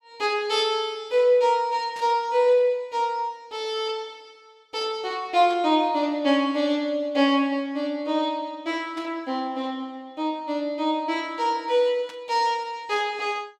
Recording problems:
burst of static; 4 times, first at 2 s; peak -14 dB vs average level

